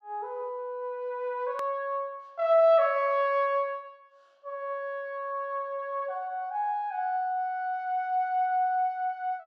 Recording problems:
hard cut with a click; at 1.5 s

